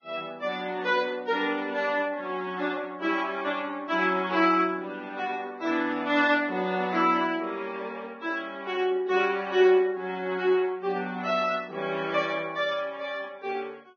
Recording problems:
lossy codec; Vorbis, log-spectral distance 3 dB, nothing above 6.3 kHz

